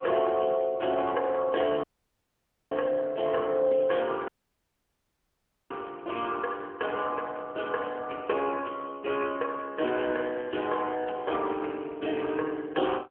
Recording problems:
phone line; 300 Hz to 3.3 kHz, AMR-NB
audio cutting out; at 2 s for 1 s and at 4.5 s for 1.5 s

